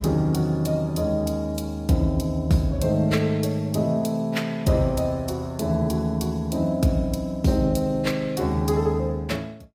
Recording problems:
lossy compression; AAC, log-spectral distance 2 dB, nothing above 15.1 kHz

